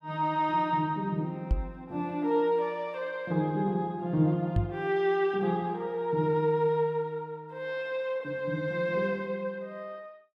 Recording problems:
microphone thump; at 1.5 s and at 4.5 s; peak +5 dB vs average level

